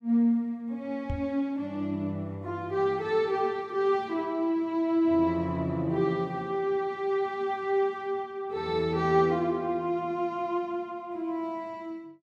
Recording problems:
microphone thump; at 1 s; peak -1 dB vs average level

